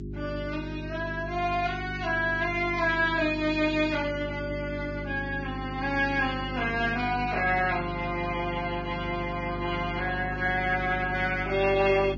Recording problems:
lossy codec; Vorbis, then Vorbis, log-spectral distance 3 dB, nothing above 6.3 kHz
electrical hum; 50 Hz, harmonics up to 400 Hz, SNR 9 dB

